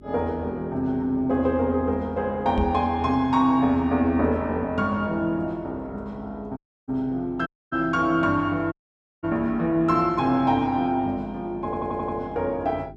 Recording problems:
hum; 50 Hz, harmonics up to 400 Hz, SNR 22 dB
microphone bump; at 2.5 s; peak +3 dB vs average level
audio cutting out; at 6.5 s, at 7.5 s and at 8.5 s for 0.5 s
audio stuttering; at 12 s

